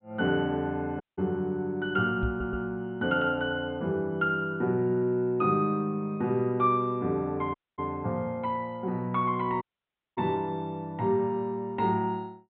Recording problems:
treble missing; nothing above 4 kHz
dropout; at 1 s, at 7.5 s and at 9.5 s for 0.5 s
knock on the microphone; at 2 s; peak +1 dB vs average level
stutter; at 2.5 s

